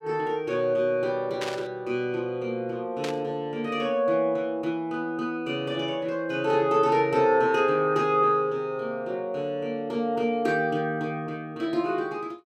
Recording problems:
static burst; at 1.5 s and at 3 s; peak -3 dB vs average level

